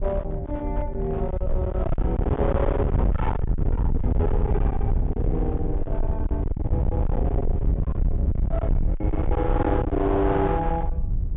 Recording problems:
treble cut off; nothing above 3.6 kHz
distorted audio; hard clipping, uneven, signal-to-distortion ratio 7 dB
wind noise; below 110 Hz, SNR -1 dB

